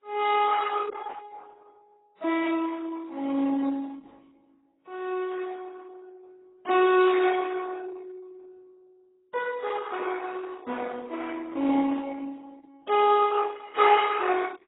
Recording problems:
codec artefacts; Opus, then AAC, log-spectral distance 4 dB, nothing above 3.8 kHz

